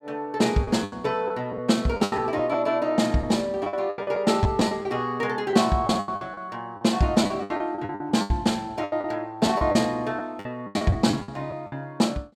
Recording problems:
packet loss; 14% of the sound replaced, filled with the last packet

